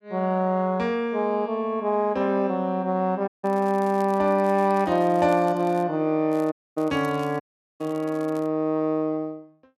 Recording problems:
audio cutting out; at 3.5 s, at 6.5 s and at 7.5 s
crackle; from 3.5 to 6 s and from 6.5 to 8.5 s; loose cable, SNR 27 dB

